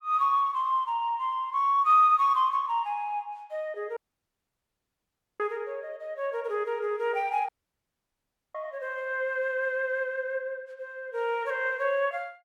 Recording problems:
dropout; at 4 s for 1.5 s and at 7.5 s for 1 s

